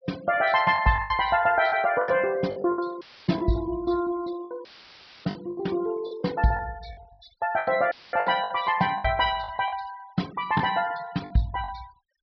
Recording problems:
treble cut off; nothing above 5.5 kHz
noise reduction artefacts; signal-to-artefact ratio 22 dB
packet loss; 10% of the sound replaced, filled with the last packet
audio cutting out; at 3 s, at 4.5 s for 0.5 s and at 8 s; filled with static

